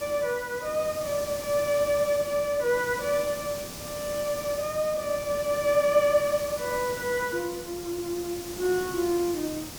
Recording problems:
hiss; SNR 11 dB

